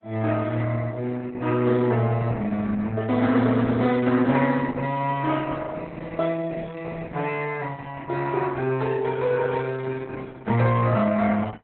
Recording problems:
lossy compression; AAC, then Opus, log-spectral distance 3 dB, nothing above 4 kHz

